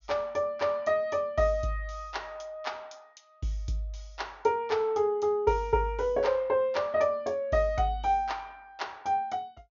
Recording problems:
low-pass filter; nothing above 6.8 kHz

